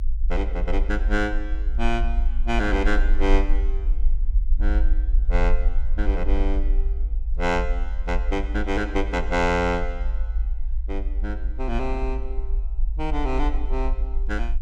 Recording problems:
rumble; below 50 Hz, SNR -1 dB

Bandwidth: 16.5 kHz